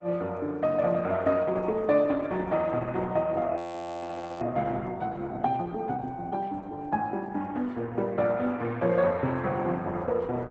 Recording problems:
codec artefacts; Opus, log-spectral distance 2 dB, nothing above 8 kHz
audio freezing; at 3.5 s for 1 s

